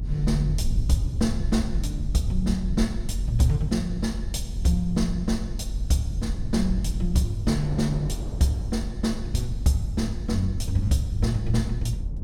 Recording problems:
low-frequency rumble; below 84 Hz, SNR 4 dB
wind on the microphone; below 420 Hz, SNR 19 dB

